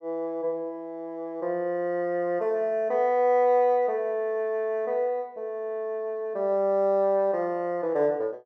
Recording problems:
none

